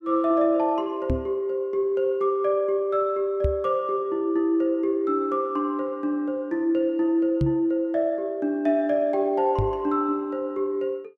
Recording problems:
knock on the microphone; 4 times, first at 1 s; peak +3 dB vs average level

